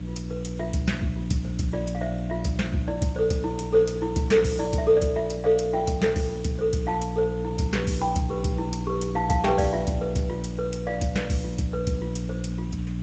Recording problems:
lossy codec; Speex, log-spectral distance 3 dB, nothing above 7.8 kHz
hum; 60 Hz, harmonics up to 300 Hz, SNR 6 dB
hiss; SNR 24 dB

